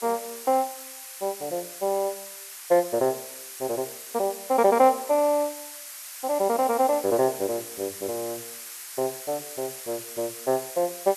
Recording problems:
hiss; SNR 11 dB

